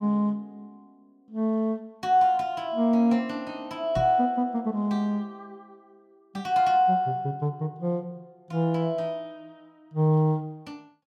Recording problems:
microphone thump; at 4 s; peak -2 dB vs average level

